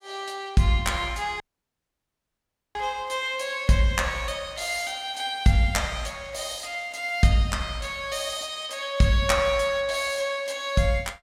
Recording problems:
dropout; at 1.5 s for 1.5 s

